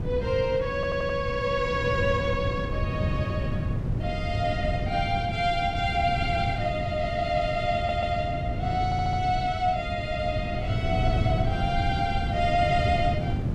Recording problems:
wind on the microphone; below 180 Hz, SNR 3 dB
stutter; at 1 s, at 8 s and at 9 s

